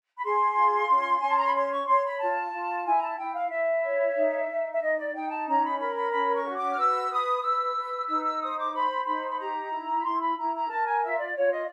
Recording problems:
none

